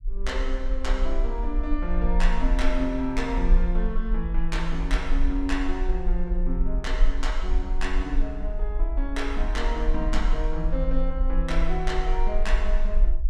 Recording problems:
rumble; below 40 Hz, strongest tone 24 Hz, SNR -2 dB

